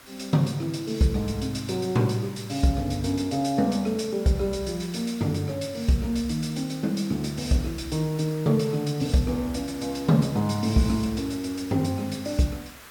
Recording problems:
hiss; SNR 19 dB

